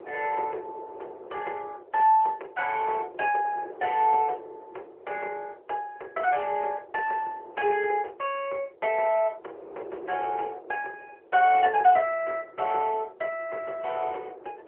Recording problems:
telephone audio; 320 Hz to 3.1 kHz, AMR-NB
wind noise; below 590 Hz, SNR 19 dB

